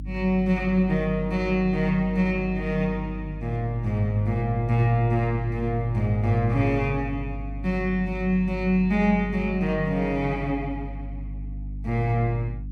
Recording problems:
hum; 50 Hz, harmonics up to 300 Hz, SNR 10 dB

